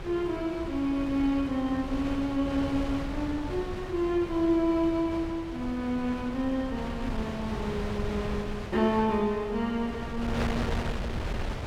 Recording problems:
wind on the microphone; below 570 Hz, SNR 7 dB

